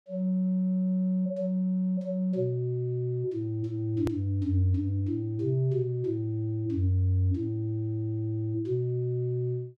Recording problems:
edit click; at 4 s

